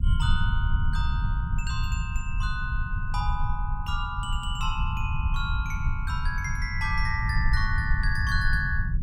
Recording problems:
low-frequency rumble; below 90 Hz, SNR -2 dB

